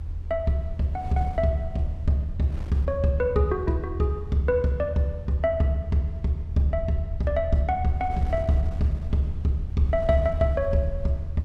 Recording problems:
low-frequency rumble; below 80 Hz, SNR 9 dB
wind on the microphone; below 200 Hz, SNR 18 dB

